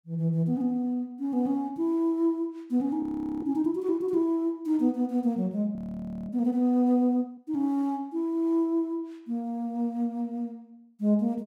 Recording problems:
audio freezing; at 3 s and at 6 s for 0.5 s

